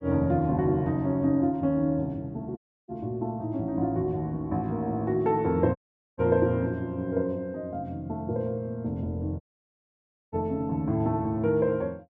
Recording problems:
audio cutting out; at 2.5 s, at 6 s and at 9.5 s for 1 s

